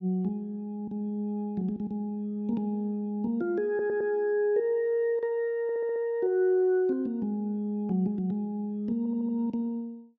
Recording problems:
audio stuttering; at 3.5 s, at 5.5 s and at 9 s

